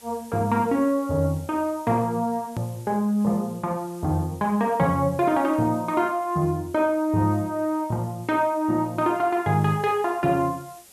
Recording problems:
background hiss; slope -1 dB per octave, SNR 24 dB
edit click; at 2.5 s

